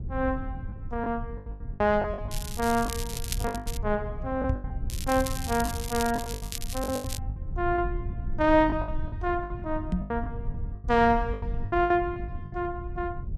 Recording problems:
low-frequency rumble; below 96 Hz, SNR 8 dB
lost packets; 14% of the sound replaced, filled with the last packet
crackling; from 2.5 to 4 s, from 5 to 6 s and from 6 to 7 s; loose cable, SNR 9 dB
knock on the microphone; at 4.5 s and at 10 s; peak +4 dB vs average level

